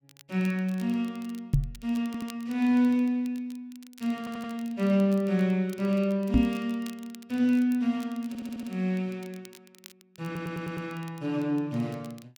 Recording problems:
crackle; vinyl, SNR 25 dB
knock on the microphone; at 1.5 s and at 6.5 s; peak +9 dB vs average level
audio stuttering; 4 times, first at 2 s

